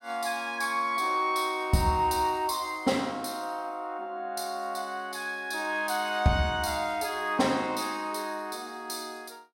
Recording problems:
none

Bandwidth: 16 kHz